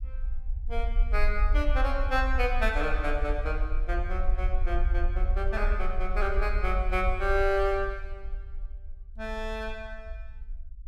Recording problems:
rumble; below 48 Hz, SNR 0 dB

